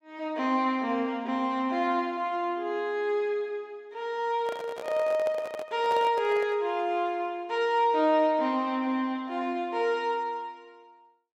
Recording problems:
handling noise; from 4.5 to 6.5 s; peak -4 dB vs average level

